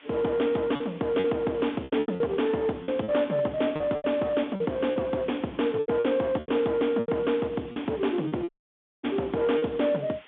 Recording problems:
phone line; 190 Hz to 3.5 kHz, G.711
distortion; hard clipping, signal-to-distortion ratio 13 dB
background hiss; SNR 24 dB
packet loss; 10% of the sound replaced, filled with repeated pitch periods
audio cutting out; at 8.5 s for 0.5 s

